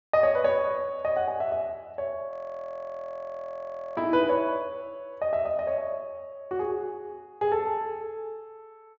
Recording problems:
treble cut off; nothing above 7.3 kHz
frozen audio; at 2.5 s for 1.5 s

